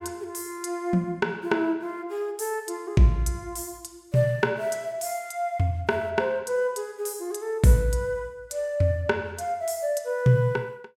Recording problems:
none

